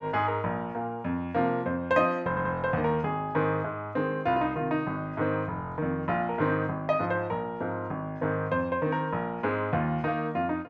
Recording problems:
stutter; at 2.5 s

